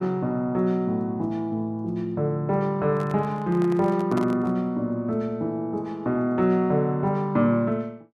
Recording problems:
microphone handling noise; from 3 to 4.5 s; peak -5 dB vs average level

